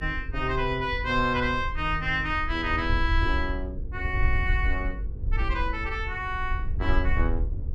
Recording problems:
hum; 50 Hz, harmonics up to 500 Hz, SNR 20 dB
wind noise; below 66 Hz, SNR 3 dB

